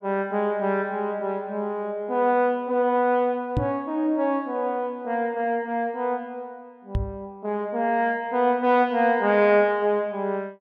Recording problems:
microphone bump; at 3.5 s and at 7 s; peak +2 dB vs average level

